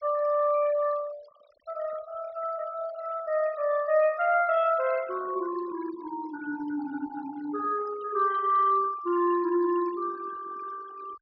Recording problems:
low-pass filter; nothing above 5.5 kHz
noise reduction artefacts; signal-to-artefact ratio 19 dB

